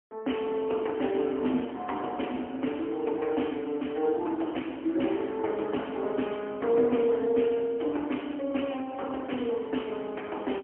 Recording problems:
phone line; 220 Hz to 3.2 kHz, AMR-NB, then MP3

